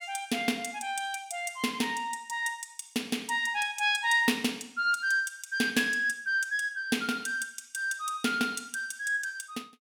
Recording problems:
none

